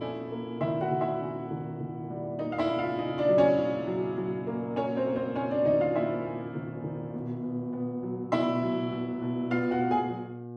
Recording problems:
hum; 60 Hz, harmonics up to 1.2 kHz, SNR 12 dB

